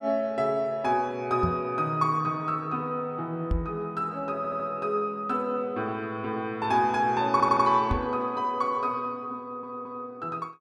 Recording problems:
knock on the microphone; at 1.5 s, at 3.5 s and at 8 s; peak +3 dB vs average level
audio stuttering; at 4.5 s, at 7.5 s and at 9.5 s

